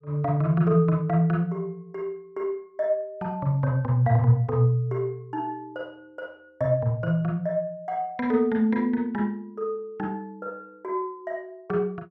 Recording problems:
none

